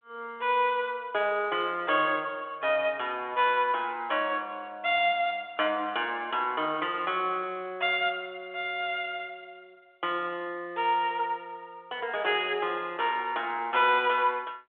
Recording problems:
phone line; 280 Hz to 3.4 kHz, G.726

